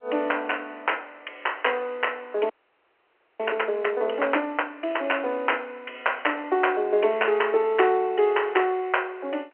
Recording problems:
telephone audio; 300 Hz to 3.1 kHz, G.711
audio freezing; at 2.5 s for 1 s

